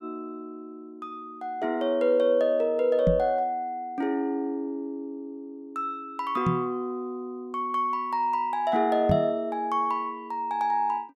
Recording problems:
knock on the microphone; at 3 s, at 6.5 s and at 9 s; peak +5 dB vs average level

